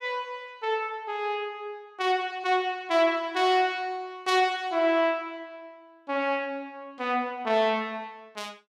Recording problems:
none

